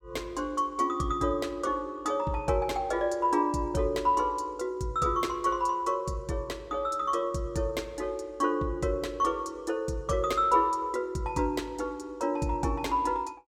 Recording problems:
none

